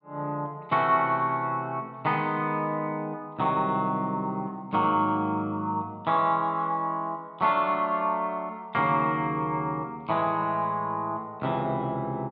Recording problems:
low-pass filter; nothing above 5.5 kHz

